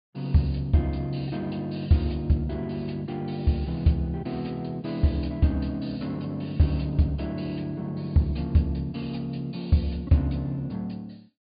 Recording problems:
treble cut off; nothing above 4.8 kHz

